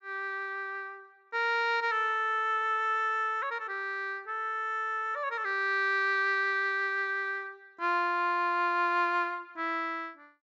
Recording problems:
low-pass filter; nothing above 8 kHz

